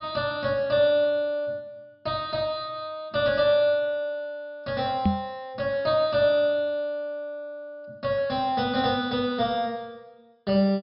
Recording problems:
low-pass filter; nothing above 5.5 kHz
microphone thump; at 5 s; peak +6 dB vs average level

